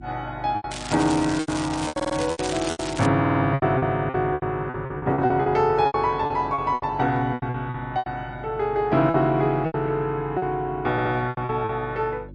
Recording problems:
lossy codec; MP3, log-spectral distance 2 dB, nothing above 8 kHz
hum; 50 Hz, harmonics up to 350 Hz, SNR 19 dB
lost packets; 14% of the sound replaced, filled with repeated pitch periods
crackle; from 0.5 to 3 s; loose cable, SNR 10 dB
stutter; at 2 s, at 3 s and at 11 s

